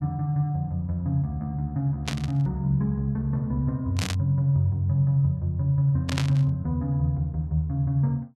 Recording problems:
static burst; at 2 s, at 4 s and at 6 s; peak 0 dB vs average level

